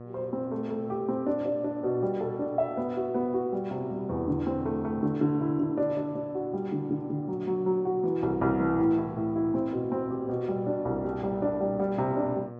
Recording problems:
low-pass filter; nothing above 7.7 kHz
hum; 60 Hz, harmonics up to 1.3 kHz, SNR 17 dB

